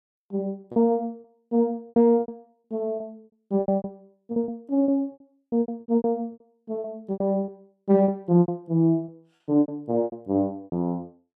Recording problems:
packet loss; 17% of the sound replaced, filled with repeated pitch periods

